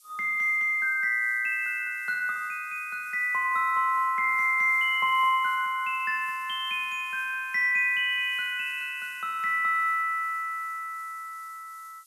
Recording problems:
background hiss; SNR 27 dB

